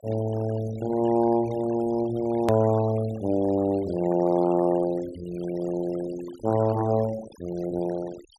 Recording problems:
noise reduction artefacts; signal-to-artefact ratio 19 dB
hard cut with a click; at 2.5 s

